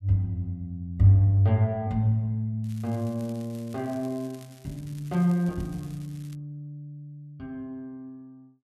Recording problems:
crackle; from 2.5 to 6.5 s; loose cable, SNR 27 dB

